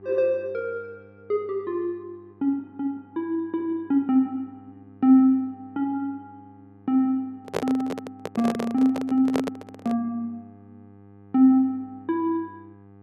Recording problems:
electrical hum; 50 Hz, harmonics up to 1.3 kHz, SNR 26 dB
microphone handling noise; from 7.5 to 10 s; peak +2 dB vs average level

